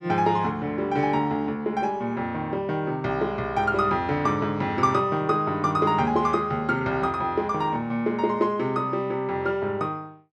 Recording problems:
none

